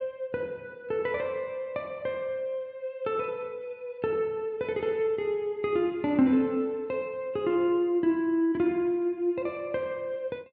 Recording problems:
none

